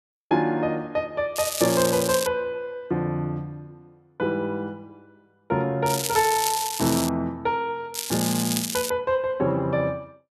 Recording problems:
crackle; at 1.5 s, from 6 to 7 s and at 8 s; loose cable, SNR 3 dB

